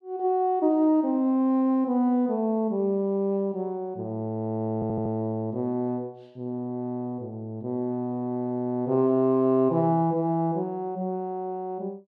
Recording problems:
audio stuttering; at 4.5 s

